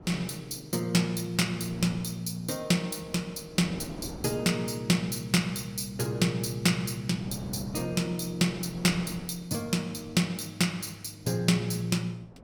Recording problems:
wind noise; below 490 Hz, SNR 18 dB

